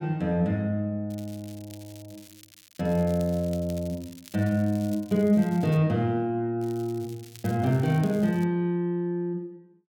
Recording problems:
crackling; from 1 to 6 s and from 6.5 to 8.5 s; loose cable, SNR 23 dB

